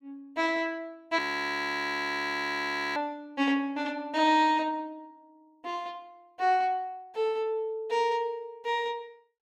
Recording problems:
audio freezing; at 1 s for 2 s

